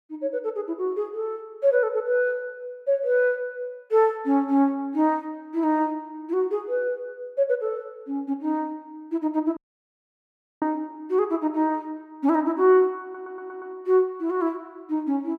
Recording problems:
audio cutting out; at 9.5 s for 1 s
audio stuttering; at 13 s

